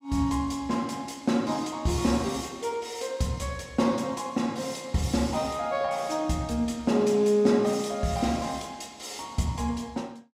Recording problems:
none

